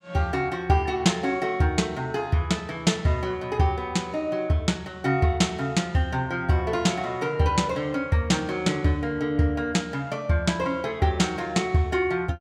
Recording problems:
none

